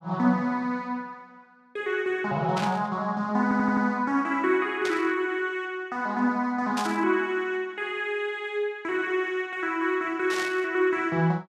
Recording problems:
static burst; 4 times, first at 2.5 s; peak -3 dB vs average level
stutter; at 3.5 s

